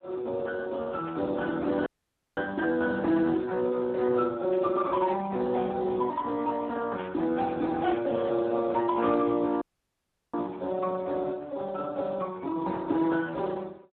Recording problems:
telephone audio; 220 Hz to 2 kHz, Speex
static burst; at 1 s, at 4.5 s and at 7 s; peak -12 dB vs average level
dropout; at 2 s for 0.5 s and at 9.5 s for 0.5 s

